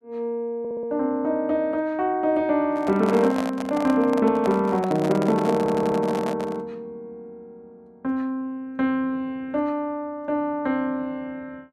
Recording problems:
audio stuttering; at 0.5 s and at 5.5 s
handling noise; from 2.5 to 6.5 s; peak -2 dB vs average level

